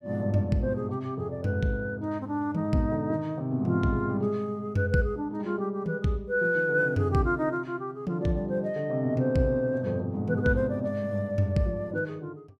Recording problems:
none

